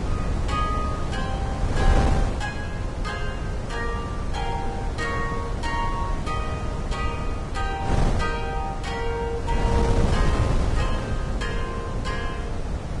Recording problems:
codec artefacts; Vorbis, log-spectral distance 2 dB, nothing above 10.1 kHz
wind noise; below 210 Hz, SNR -4 dB

